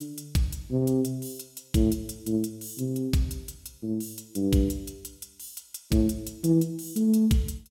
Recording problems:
none

